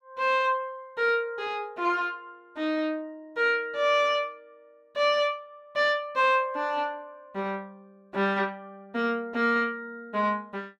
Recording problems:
none

